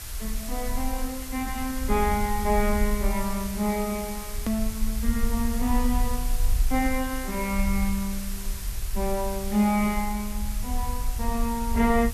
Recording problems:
hiss; slope 0 dB per octave, SNR 9 dB
rumble; below 54 Hz, SNR 5 dB
hard cut with a click; at 4.5 s

